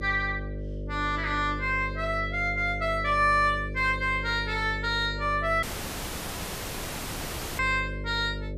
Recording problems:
hum; 50 Hz, harmonics up to 600 Hz, SNR 9 dB
dropout; at 5.5 s for 2 s

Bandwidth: 14.5 kHz